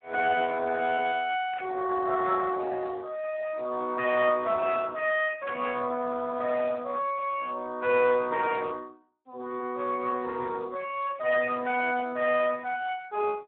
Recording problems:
telephone audio; 260 Hz to 3.1 kHz, Speex
burst of static; at 1.5 s and at 5.5 s; peak -9 dB vs average level

